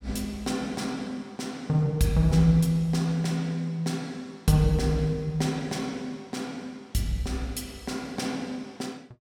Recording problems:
none

